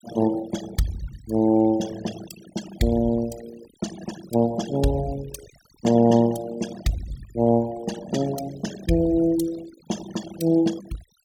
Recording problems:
noise reduction artefacts; signal-to-artefact ratio 14 dB

